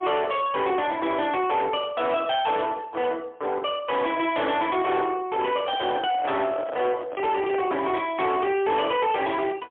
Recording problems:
telephone audio; 240 Hz to 3.5 kHz, AMR-NB, then MP3
distorted audio; soft clipping, signal-to-distortion ratio 10 dB
microphone handling noise; from 5.5 to 8 s; peak -4 dB vs average level

